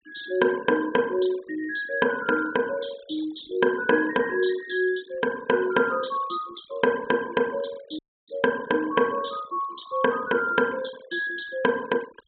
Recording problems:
treble missing; nothing above 4 kHz
noise reduction artefacts; signal-to-artefact ratio 19 dB
audio cutting out; at 8 s

